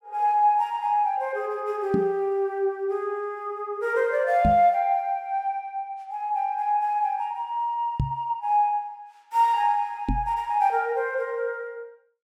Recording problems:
microphone thump; 4 times, first at 2 s; peak +3 dB vs average level

